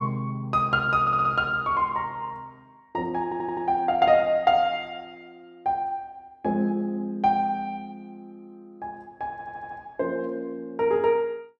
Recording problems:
audio stuttering; at 1 s, at 3 s and at 9.5 s

